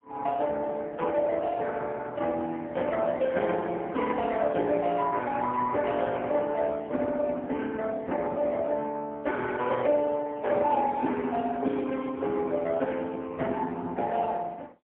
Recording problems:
telephone audio; 220 Hz to 3.5 kHz, AMR-NB, then MP3

